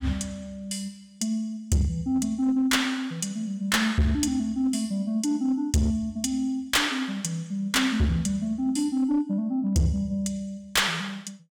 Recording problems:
distortion; hard clipping, uneven, signal-to-distortion ratio 10 dB

